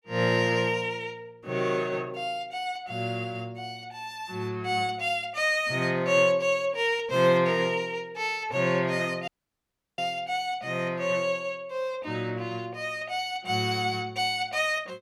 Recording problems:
dropout; at 9.5 s for 0.5 s

